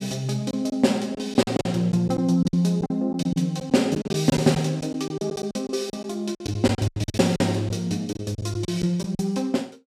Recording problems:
lost packets; 13% of the sound replaced, filled with silence

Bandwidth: 15 kHz